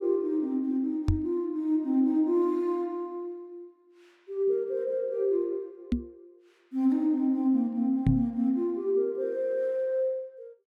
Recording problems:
microphone thump; at 1 s, at 6 s and at 8 s; peak +6 dB vs average level

